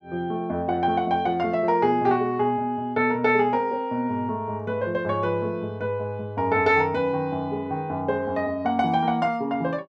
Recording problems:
none

